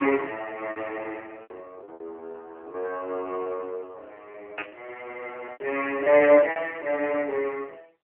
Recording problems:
telephone audio; 280 Hz to 3.1 kHz, AMR-NB
lost packets; 10% of the sound replaced, filled with repeated pitch periods
static burst; at 4.5 s; peak -3 dB vs average level

